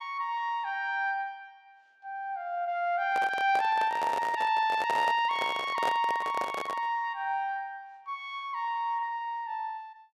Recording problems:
microphone handling noise; from 3 to 7 s; peak 0 dB vs average level

